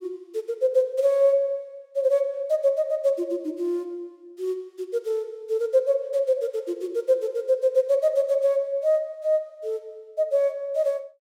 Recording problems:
none

